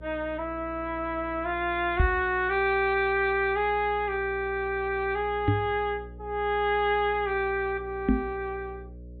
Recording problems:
low-pass filter; nothing above 4 kHz
hum; 60 Hz, harmonics up to 600 Hz, SNR 17 dB
microphone thump; at 2 s, at 5.5 s and at 8 s; peak +7 dB vs average level

